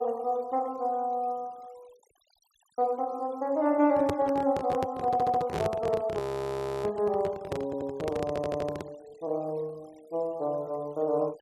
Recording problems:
denoising artefacts; signal-to-artefact ratio 28 dB
handling noise; from 4 to 9 s; peak +2 dB vs average level
stutter; at 5 s, at 7.5 s and at 8.5 s
audio freezing; at 6 s for 0.5 s

